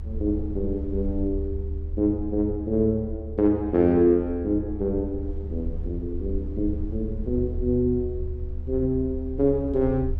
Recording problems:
rumble; below 76 Hz, SNR 8 dB

